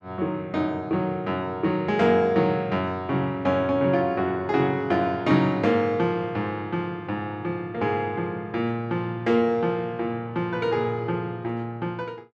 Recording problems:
none

